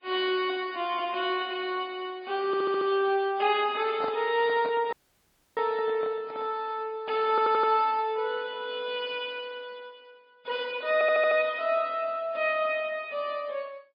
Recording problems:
codec artefacts; MP3, log-spectral distance 2 dB, nothing above 4.4 kHz
stutter; at 2.5 s, at 7.5 s and at 11 s
microphone handling noise; from 4 to 6.5 s; peak -3 dB vs average level
audio cutting out; at 5 s for 0.5 s

